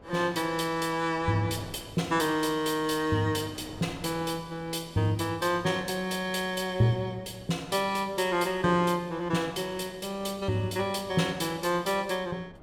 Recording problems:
wind noise; below 650 Hz, SNR 21 dB

